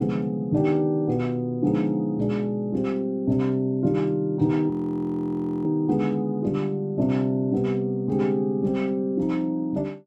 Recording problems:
frozen audio; at 4.5 s for 1 s

